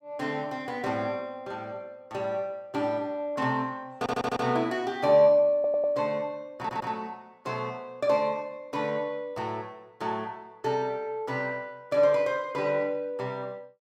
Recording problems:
stutter; at 4 s, at 5.5 s and at 6.5 s

